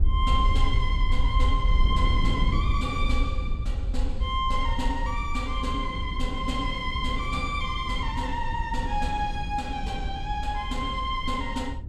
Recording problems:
rumble; below 60 Hz, SNR 0 dB
wind noise; below 210 Hz, SNR 7 dB

